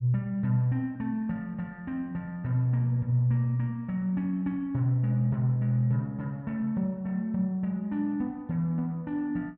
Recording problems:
none

